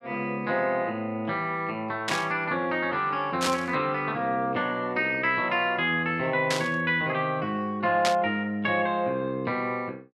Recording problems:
burst of static; 4 times, first at 2 s; peak +3 dB vs average level

